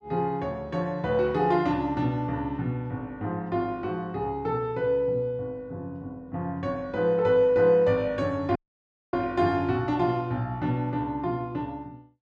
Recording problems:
dropout; at 8.5 s for 0.5 s

